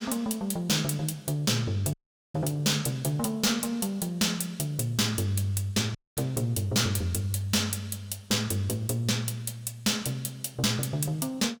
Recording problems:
distortion; hard clipping, uneven, signal-to-distortion ratio 10 dB
audio cutting out; at 2 s and at 6 s

